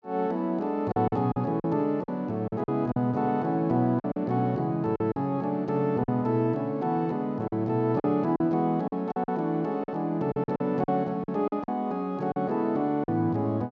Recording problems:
lost packets; 8% of the sound replaced, filled with silence

